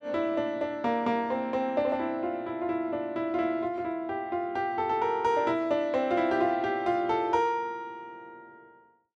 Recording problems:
none

